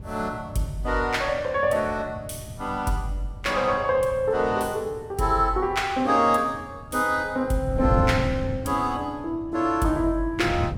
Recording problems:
wind on the microphone; below 160 Hz, SNR 11 dB

